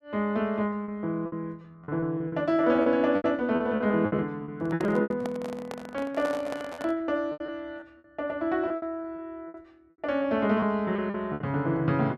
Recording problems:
lost packets; 13% of the sound replaced, filled with repeated pitch periods
microphone handling noise; from 4.5 to 7 s; peak -4 dB vs average level

